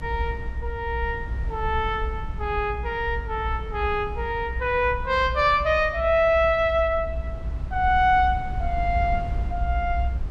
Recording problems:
low-frequency rumble; below 66 Hz, SNR 8 dB

